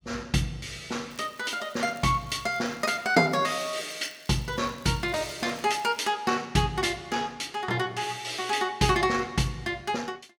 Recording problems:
crackling; from 1 to 6 s; loose cable, SNR 25 dB

